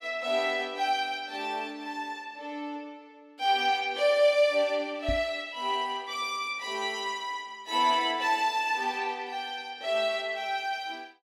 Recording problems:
knock on the microphone; at 5 s; peak -1 dB vs average level

